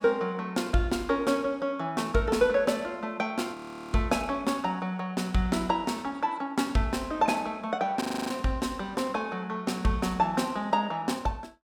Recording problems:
audio freezing; at 3.5 s and at 8 s

